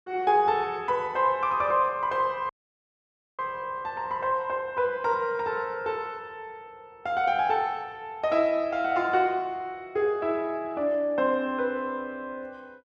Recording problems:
dropout; at 2.5 s for 1 s

